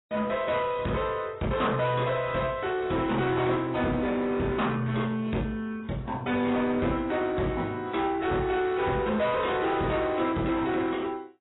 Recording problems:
lossy codec; AAC, log-spectral distance 3 dB, nothing above 3.8 kHz
distorted audio; soft clipping, signal-to-distortion ratio 10 dB
crackling; from 8.5 to 11 s; loose cable, SNR 30 dB

